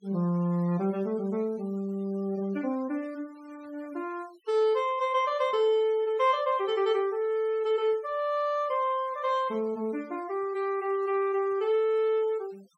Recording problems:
denoising artefacts; signal-to-artefact ratio 27 dB

